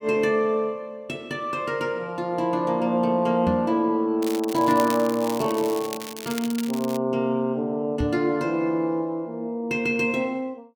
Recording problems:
microphone thump; at 3.5 s and at 8 s; peak 0 dB vs average level
crackle; from 4 to 7 s; loose cable, SNR 13 dB

